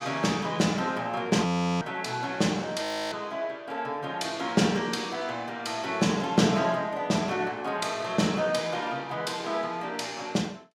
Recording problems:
audio freezing; at 1.5 s and at 3 s

